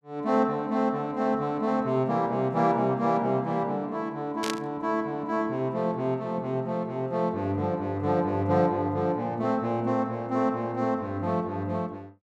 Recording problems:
static burst; at 4.5 s; peak -1 dB vs average level

